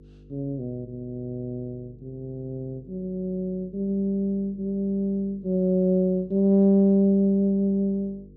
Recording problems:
hum; 50 Hz, harmonics up to 500 Hz, SNR 26 dB

